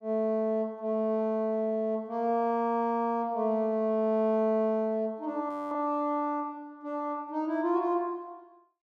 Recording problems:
audio freezing; at 5.5 s

